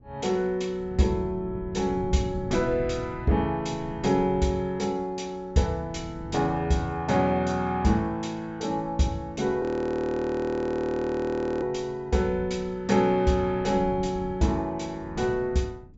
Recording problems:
low-pass filter; nothing above 7.4 kHz
wind noise; below 190 Hz, SNR 15 dB
frozen audio; at 9.5 s for 2 s

